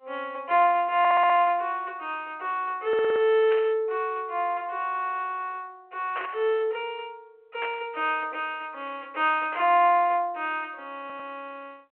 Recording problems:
telephone audio; 340 Hz to 3.3 kHz, G.726
audio stuttering; at 1 s, at 3 s and at 11 s
burst of static; 4 times, first at 3.5 s; peak -6 dB vs average level

